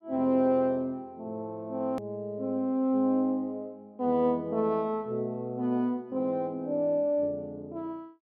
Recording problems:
edit click; at 2 s

